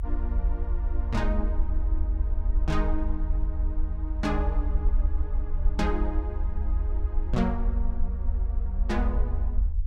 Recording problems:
low-frequency rumble; below 60 Hz, SNR -5 dB

